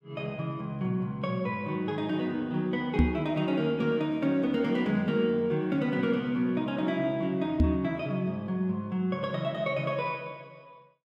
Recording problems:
microphone bump; at 3 s and at 7.5 s; peak +9 dB vs average level

